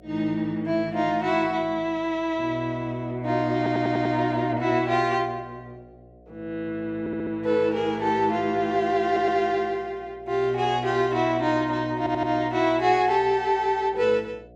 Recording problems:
hum; 60 Hz, harmonics up to 720 Hz, SNR 27 dB
audio stuttering; 4 times, first at 3.5 s

